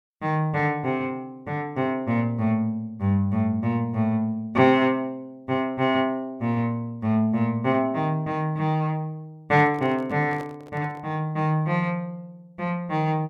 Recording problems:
microphone handling noise; from 9.5 to 11 s; peak -11 dB vs average level

